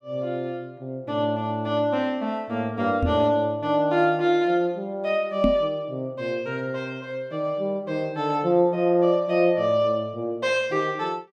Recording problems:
knock on the microphone; at 3 s and at 5.5 s; peak +4 dB vs average level

